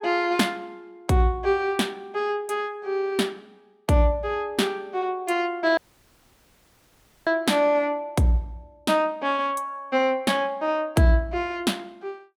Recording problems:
dropout; at 6 s for 1.5 s

